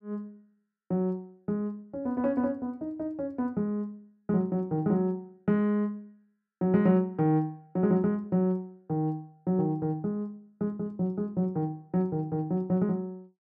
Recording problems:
none

